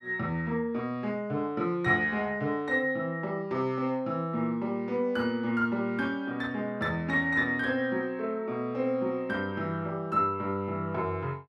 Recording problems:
none

